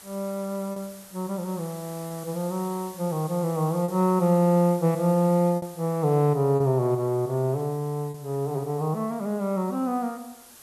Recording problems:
background hiss; slope -1 dB per octave, SNR 20 dB
lost packets; 2% of the sound replaced, filled with repeated pitch periods

